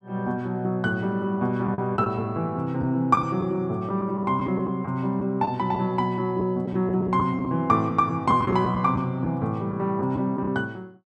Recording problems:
packet loss; 5% of the sound replaced, filled with the last packet

